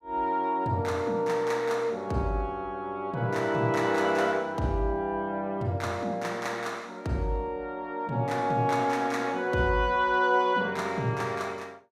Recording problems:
none

